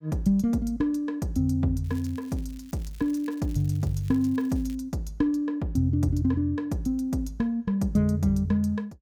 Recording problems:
crackling; from 2 to 5 s; loose cable, SNR 27 dB

